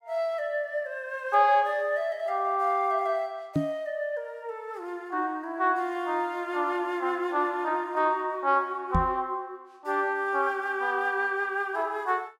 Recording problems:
knock on the microphone; at 3.5 s and at 9 s; peak +5 dB vs average level

